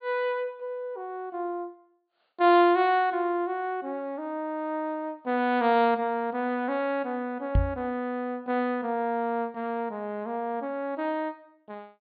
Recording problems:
treble cut off; nothing above 4.5 kHz
microphone thump; at 7.5 s; peak +7 dB vs average level

